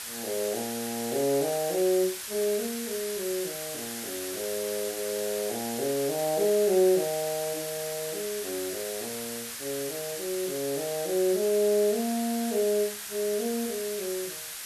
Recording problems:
hiss; SNR 6 dB

